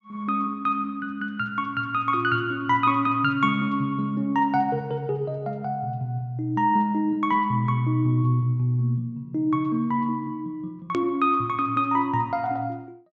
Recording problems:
treble cut off; nothing above 8 kHz
click at an edit; at 11 s

